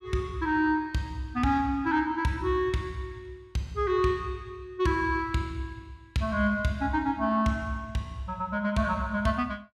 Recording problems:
none

